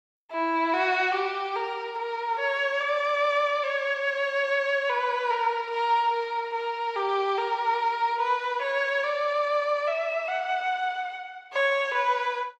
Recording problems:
none

